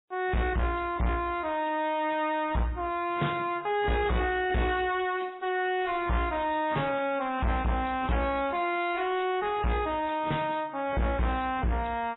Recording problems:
lossy codec; AAC, then MP3, log-spectral distance 3 dB, nothing above 3.9 kHz
distortion; soft clipping, signal-to-distortion ratio 5 dB

